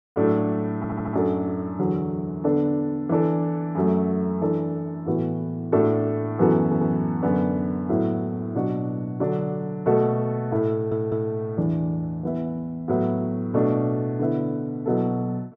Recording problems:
audio stuttering; at 1 s, at 6.5 s and at 11 s

